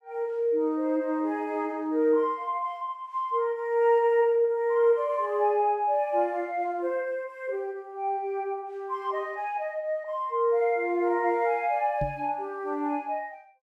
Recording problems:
microphone thump; at 12 s; peak -2 dB vs average level

